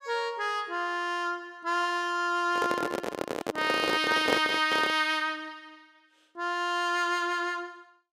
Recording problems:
handling noise; from 2.5 to 5 s; peak +4 dB vs average level

